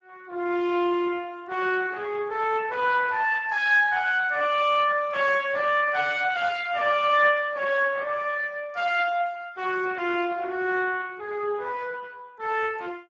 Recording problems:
lossy codec; Speex, log-spectral distance 4 dB

